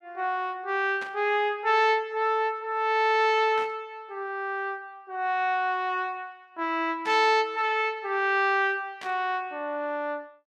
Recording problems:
burst of static; 4 times, first at 1 s; peak -10 dB vs average level

